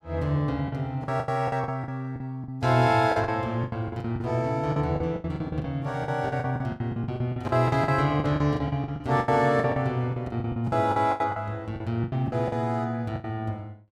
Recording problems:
lost packets; 18% of the sound replaced, filled with the last packet

